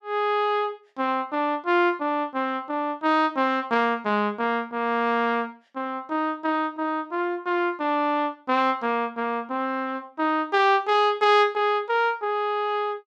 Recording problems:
none

